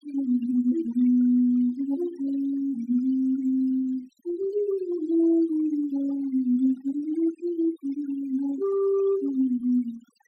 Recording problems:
noise reduction artefacts; signal-to-artefact ratio 22 dB

